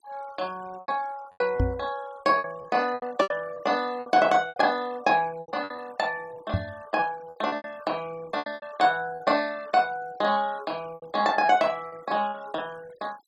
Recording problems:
denoising artefacts; signal-to-artefact ratio 22 dB
lost packets; 11% of the sound replaced, filled with repeated pitch periods
knock on the microphone; at 1.5 s and at 6.5 s; peak +4 dB vs average level

